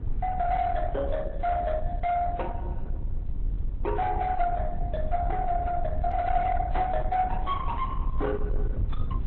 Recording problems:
lossy compression; Opus, then AAC, log-spectral distance 2 dB
distortion; soft clipping, signal-to-distortion ratio 11 dB
rumble; below 66 Hz, SNR 5 dB

